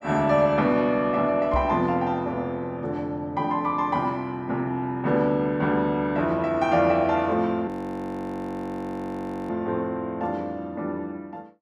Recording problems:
microphone thump; at 1.5 s; peak 0 dB vs average level
frozen audio; at 7.5 s for 2 s

